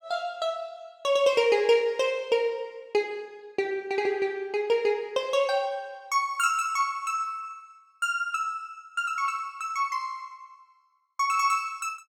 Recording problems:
none

